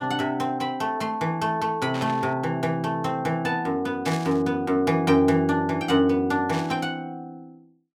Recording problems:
static burst; at 2 s, at 4 s and at 6.5 s; peak -7 dB vs average level

